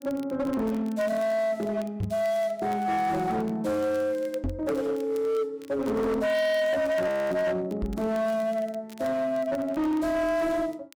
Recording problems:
distortion; hard clipping, signal-to-distortion ratio 8 dB
crackle; vinyl, SNR 27 dB
microphone thump; at 2 s, at 4.5 s and at 8 s; peak +1 dB vs average level
audio freezing; at 7 s

